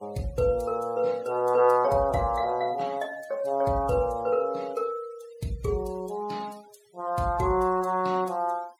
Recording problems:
noise reduction artefacts; signal-to-artefact ratio 24 dB

